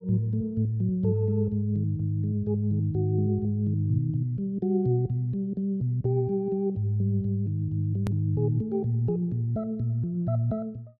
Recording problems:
edit click; at 8 s

